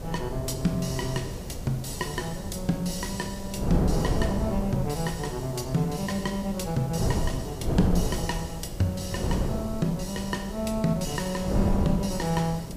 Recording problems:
hiss; SNR 20 dB
wind noise; below 310 Hz, SNR 3 dB

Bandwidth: 15 kHz